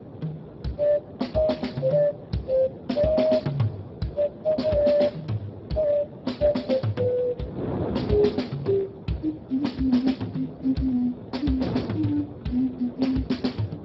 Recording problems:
codec artefacts; MP2, then Speex, log-spectral distance 4 dB
wind noise; below 490 Hz, SNR 12 dB

